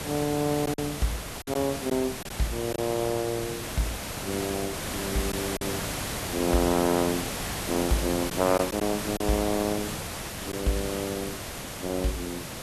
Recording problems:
hiss; slope -3 dB per octave, SNR 3 dB
lost packets; 2% of the sound replaced, filled with silence

